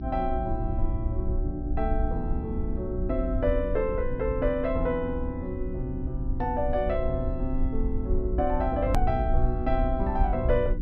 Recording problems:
treble missing; nothing above 5.7 kHz
hum; 60 Hz, harmonics up to 360 Hz, SNR 9 dB
low-frequency rumble; below 62 Hz, SNR 3 dB
edit click; at 9 s

